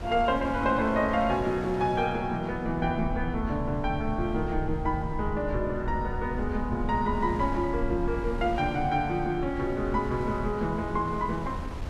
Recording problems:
mains hum; 60 Hz, harmonics up to 1.4 kHz, SNR 25 dB
low-frequency rumble; below 86 Hz, SNR 10 dB
wind noise; below 690 Hz, SNR 15 dB

